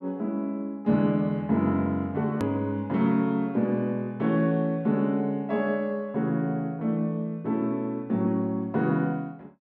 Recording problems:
hard cut with a click; at 2.5 s

